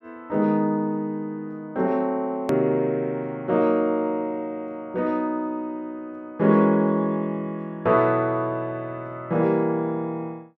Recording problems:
hard cut with a click; at 2.5 s

